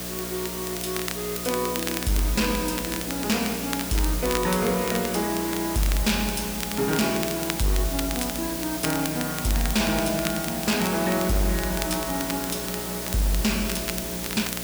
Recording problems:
distortion; hard clipping, signal-to-distortion ratio 10 dB
hum; 60 Hz, harmonics up to 660 Hz, SNR 10 dB
hiss; SNR 4 dB
crackling; vinyl, SNR 9 dB

